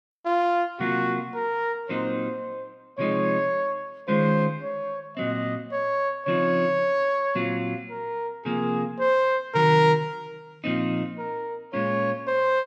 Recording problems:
none

